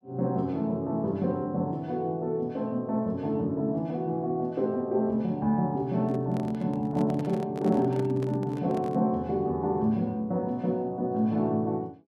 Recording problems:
handling noise; from 6 to 9 s; peak -8 dB vs average level

